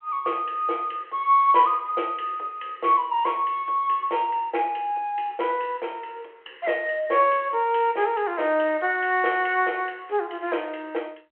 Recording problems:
phone line; 300 Hz to 3.3 kHz, G.726

